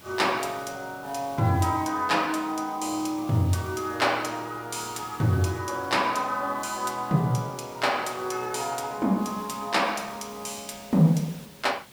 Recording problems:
background hiss; slope -2 dB per octave, SNR 20 dB

